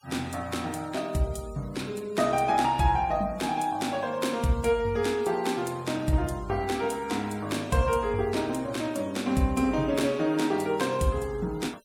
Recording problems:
noise reduction artefacts; signal-to-artefact ratio 23 dB

